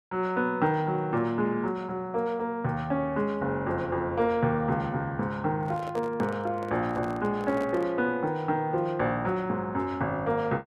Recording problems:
microphone handling noise; from 5.5 to 8 s; peak -8 dB vs average level

